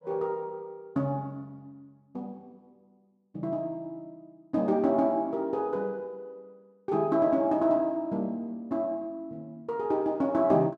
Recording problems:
none

